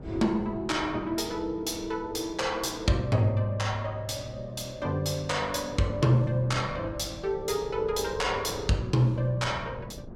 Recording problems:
wind on the microphone; below 270 Hz, SNR 16 dB

